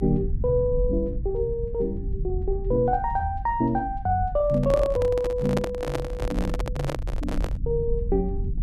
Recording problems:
rumble; below 72 Hz, SNR 6 dB
handling noise; from 4.5 to 7.5 s; peak +2 dB vs average level

